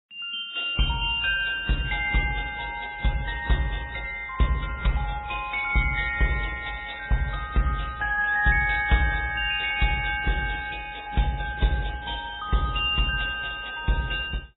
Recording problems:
lossy codec; MP3, then AAC, log-spectral distance 7 dB, nothing above 3.7 kHz

